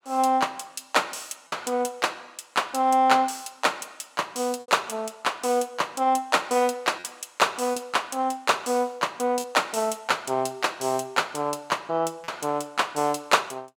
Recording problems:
packet loss; 2% of the sound replaced, filled with repeated pitch periods

